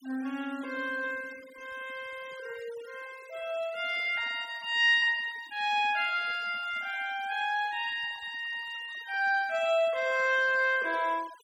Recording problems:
noise reduction artefacts; signal-to-artefact ratio 23 dB

